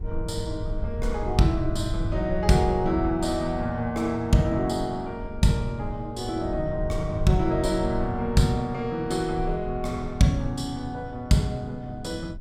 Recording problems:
rumble; below 74 Hz, SNR 10 dB

